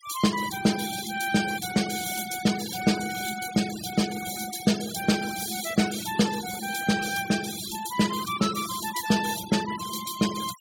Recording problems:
denoising artefacts; signal-to-artefact ratio 10 dB

